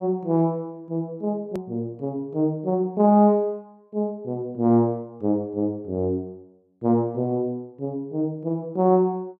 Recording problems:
edit click; at 1.5 s

